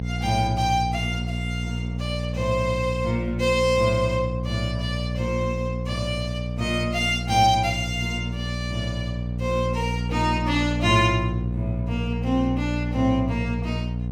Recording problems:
hum; 60 Hz, harmonics up to 540 Hz, SNR 3 dB

